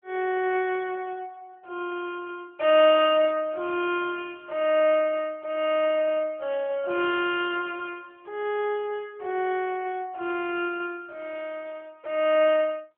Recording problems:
phone line; 320 Hz to 3.4 kHz, AMR-NB

